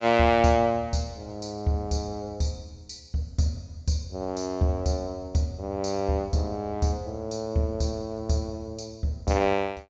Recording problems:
treble missing; nothing above 8 kHz

